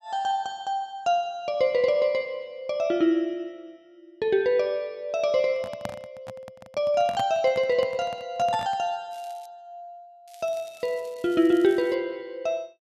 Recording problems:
handling noise; from 5.5 to 9 s; peak -3 dB vs average level
crackling; at 9 s and from 10 to 12 s; loose cable, SNR 27 dB

